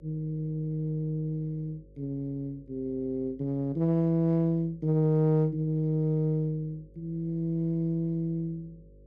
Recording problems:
hum; 50 Hz, harmonics up to 550 Hz, SNR 26 dB

